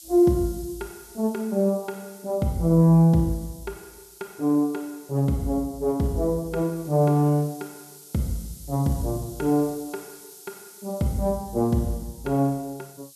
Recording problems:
background hiss; SNR 21 dB

